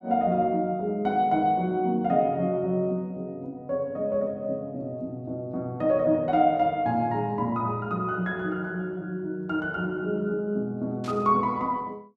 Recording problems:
static burst; at 11 s; peak -13 dB vs average level

